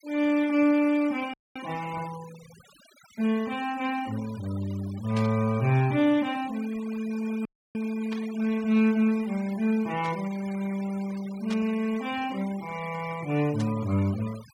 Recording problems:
noise reduction artefacts; signal-to-artefact ratio 19 dB
dropout; at 1.5 s and at 7.5 s
burst of static; 5 times, first at 5 s; peak -8 dB vs average level

